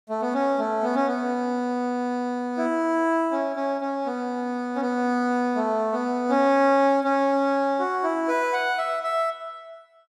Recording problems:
none

